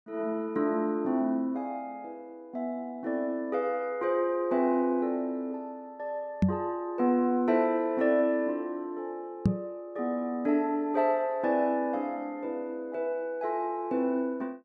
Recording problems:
microphone thump; at 6.5 s and at 9.5 s; peak +9 dB vs average level

